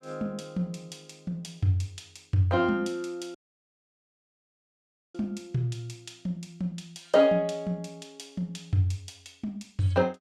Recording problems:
dropout; at 3.5 s for 2 s

